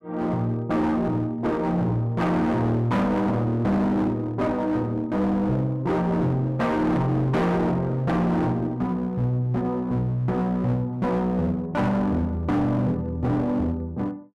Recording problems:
distorted audio; hard clipping, uneven, signal-to-distortion ratio 7 dB

